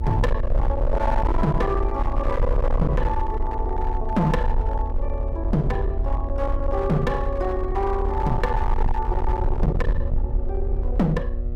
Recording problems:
distortion; hard clipping, uneven, signal-to-distortion ratio 6 dB
hum; 60 Hz, harmonics up to 1.2 kHz, SNR 14 dB
rumble; below 70 Hz, SNR 1 dB

